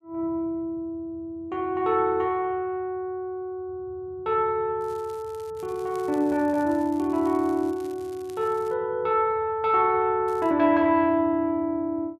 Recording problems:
crackle; from 5 to 8.5 s and at 10 s; loose cable, SNR 27 dB

